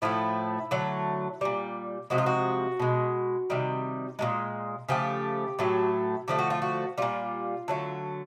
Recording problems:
none

